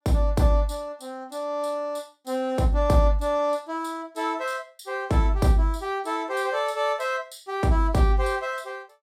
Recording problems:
none

